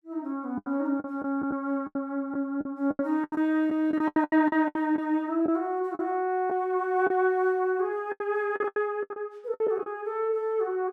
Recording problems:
packet loss; 12% of the sound replaced, filled with the last packet

